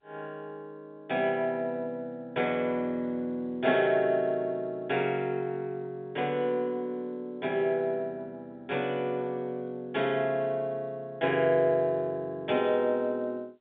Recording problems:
phone line; 150 Hz to 3.7 kHz, G.711

